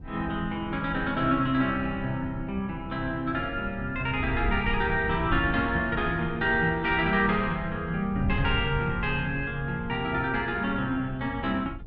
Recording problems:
wind noise; below 110 Hz, SNR 10 dB

